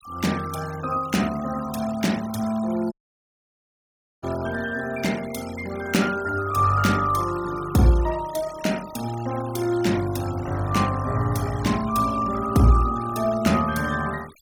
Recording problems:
noise reduction artefacts; signal-to-artefact ratio 17 dB
dropout; at 3 s for 1.5 s

